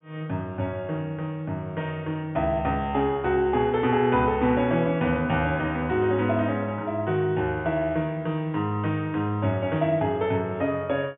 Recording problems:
low-pass filter; nothing above 3.5 kHz

